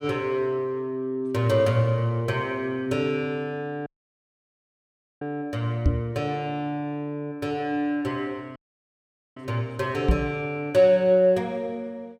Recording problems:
audio cutting out; at 4 s for 1.5 s and at 8.5 s for 1 s
knock on the microphone; at 6 s and at 10 s; peak +8 dB vs average level

